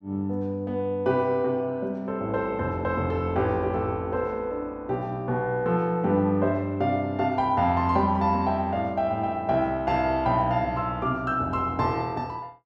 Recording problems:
none

